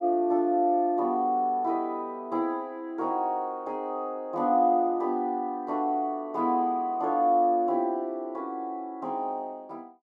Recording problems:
none

